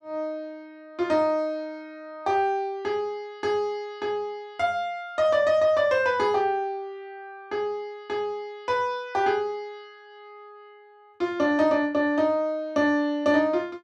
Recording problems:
none

